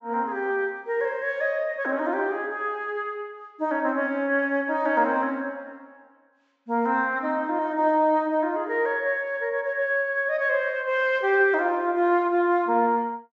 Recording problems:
treble missing; nothing above 8 kHz

